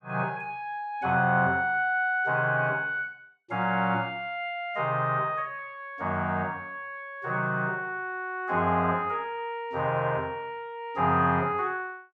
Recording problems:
none

